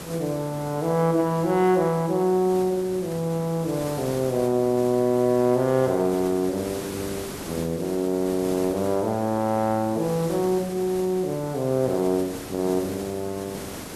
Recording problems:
background hiss; slope -5 dB per octave, SNR 14 dB

